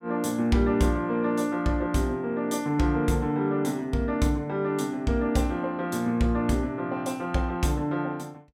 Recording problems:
none

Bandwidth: 16 kHz